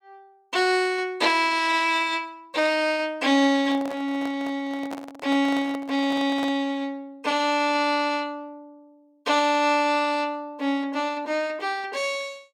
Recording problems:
handling noise; from 3.5 to 6.5 s; peak -6 dB vs average level

